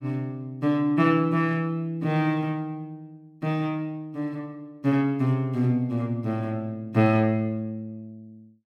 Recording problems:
none

